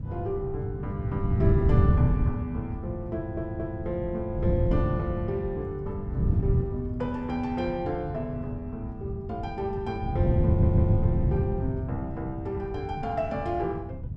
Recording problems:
wind on the microphone; below 150 Hz, SNR -3 dB
stutter; at 3 s and at 10 s

